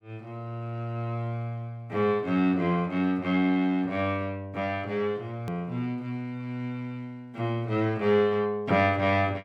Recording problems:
click at an edit; at 5.5 s

